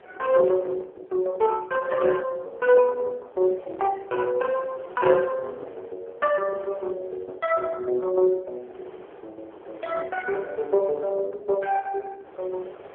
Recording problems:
phone line; 320 Hz to 2.2 kHz, AMR-NB
wind on the microphone; below 780 Hz, SNR 22 dB

